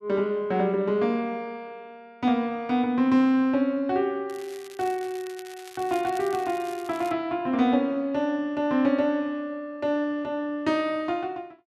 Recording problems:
crackle; from 4.5 to 7 s; loose cable, SNR 20 dB

